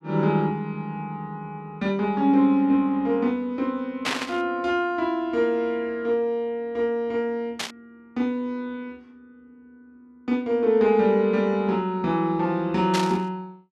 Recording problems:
static burst; at 4 s, at 7.5 s and at 13 s; peak +2 dB vs average level

